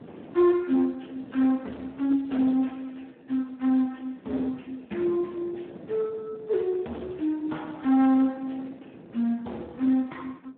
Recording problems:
telephone audio; 150 Hz to 3.8 kHz, Speex
distortion; hard clipping, signal-to-distortion ratio 13 dB
wind on the microphone; below 480 Hz, SNR 22 dB

